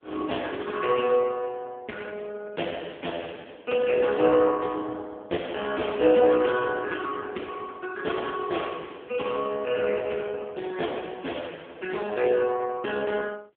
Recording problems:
phone line; 280 Hz to 3.4 kHz, AMR-NB

